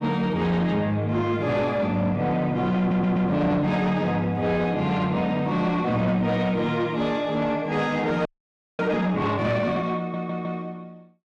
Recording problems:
distorted audio; soft clipping, signal-to-distortion ratio 11 dB
stutter; at 3 s and at 10 s
audio freezing; at 8.5 s for 0.5 s

